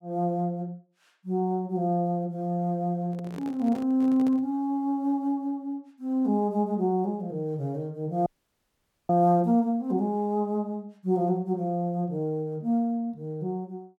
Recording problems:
microphone handling noise; from 3 to 4.5 s; peak -9 dB vs average level
audio cutting out; at 8.5 s for 1 s

